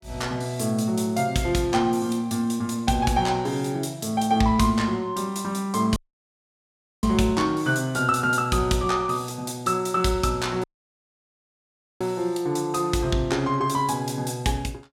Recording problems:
dropout; at 6 s for 1 s and at 11 s for 1.5 s

